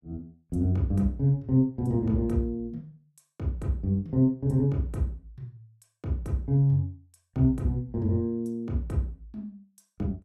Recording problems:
none

